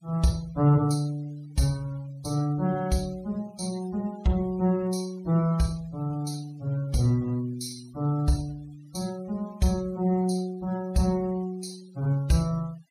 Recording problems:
noise reduction artefacts; signal-to-artefact ratio 24 dB

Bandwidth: 15.5 kHz